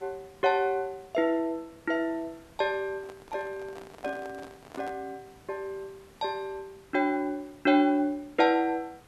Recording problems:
background hiss; slope -4 dB per octave, SNR 26 dB
handling noise; from 3 to 5 s; peak -9 dB vs average level

